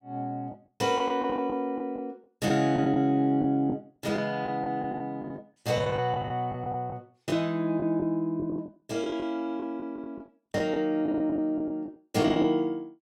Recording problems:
lost packets; 12% of the sound replaced, filled with the last packet

